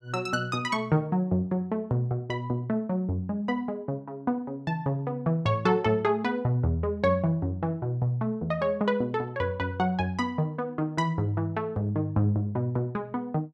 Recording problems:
none

